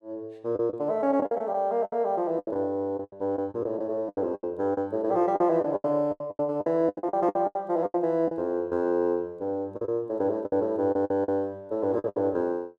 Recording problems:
packet loss; 14% of the sound replaced, filled with the last packet

